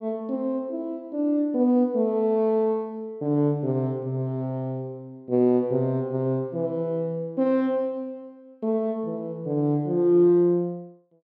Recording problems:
none

